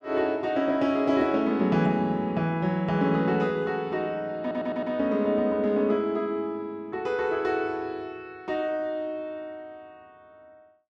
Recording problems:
audio stuttering; at 4.5 s

